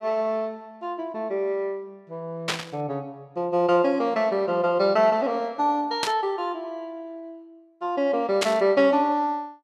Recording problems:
static burst; at 2.5 s, at 6 s and at 8.5 s; peak +3 dB vs average level

